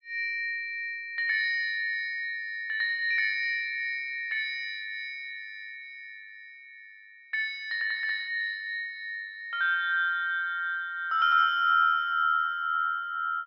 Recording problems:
low-pass filter; nothing above 5.5 kHz

